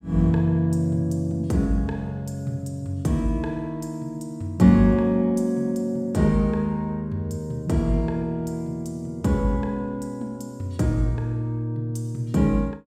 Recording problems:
none

